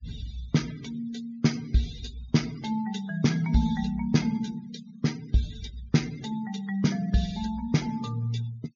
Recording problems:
low-pass filter; nothing above 6.7 kHz
denoising artefacts; signal-to-artefact ratio 20 dB

